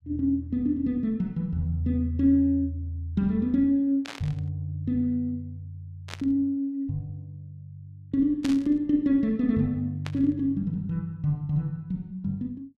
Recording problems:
burst of static; 4 times, first at 4 s; peak -5 dB vs average level

